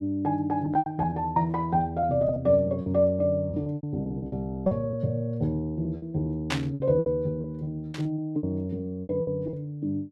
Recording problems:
packet loss; 13% of the sound replaced, filled with repeated pitch periods
static burst; at 6.5 s and at 8 s; peak +2 dB vs average level

